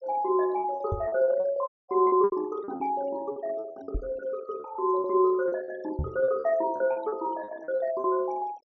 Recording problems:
low-pass filter; nothing above 6.4 kHz
noise reduction artefacts; signal-to-artefact ratio 20 dB
packet loss; 14% of the sound replaced, filled with repeated pitch periods
microphone bump; at 1 s, at 4 s and at 6 s; peak +1 dB vs average level
dropout; at 1.5 s

